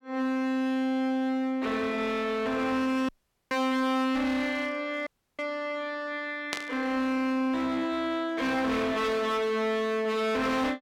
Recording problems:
distortion; hard clipping, signal-to-distortion ratio 7 dB
audio cutting out; at 3 s and at 5 s
static burst; at 6.5 s; peak +1 dB vs average level

